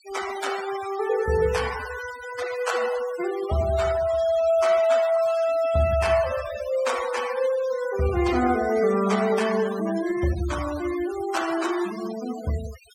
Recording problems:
noise reduction artefacts; signal-to-artefact ratio 13 dB

